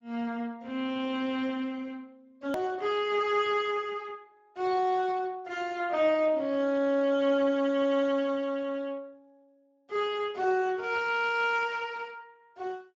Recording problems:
lossy codec; Speex, log-spectral distance 3 dB
hard cut with a click; at 2.5 s

